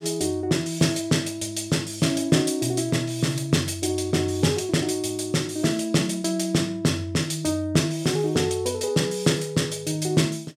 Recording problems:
none

